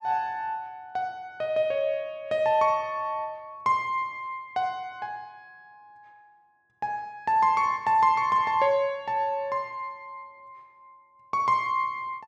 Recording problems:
none

